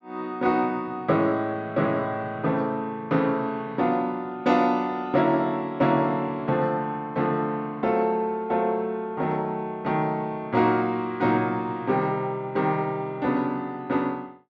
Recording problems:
treble missing; nothing above 8 kHz

